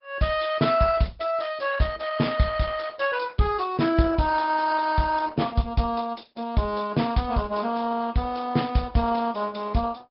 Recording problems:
treble missing; nothing above 5.2 kHz
codec artefacts; Opus, log-spectral distance 5 dB

